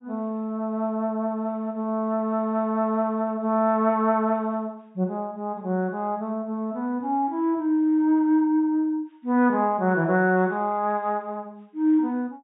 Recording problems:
treble missing; nothing above 4 kHz

